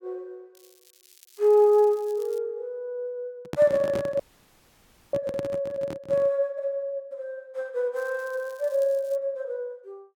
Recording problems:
crackling; from 0.5 to 2.5 s and from 8 to 9 s; loose cable, SNR 27 dB
microphone handling noise; from 3.5 to 6.5 s; peak -3 dB vs average level
frozen audio; at 4 s for 1 s

